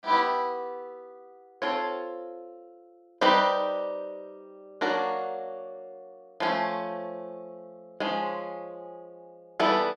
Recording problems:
none

